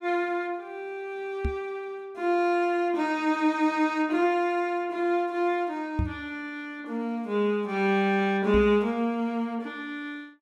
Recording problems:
knock on the microphone; at 1.5 s, at 6 s and at 8.5 s; peak +3 dB vs average level

